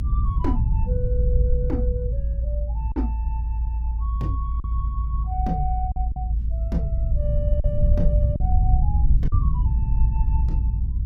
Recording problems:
low-frequency rumble; below 74 Hz, strongest tone 56 Hz, SNR -9 dB
lost packets; 3% of the sound replaced, filled with silence

